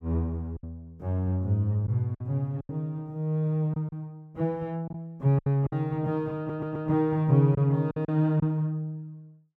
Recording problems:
lost packets; 6% of the sound replaced, filled with silence
audio stuttering; at 6.5 s

